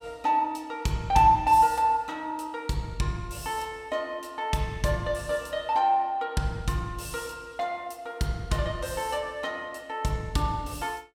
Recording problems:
none

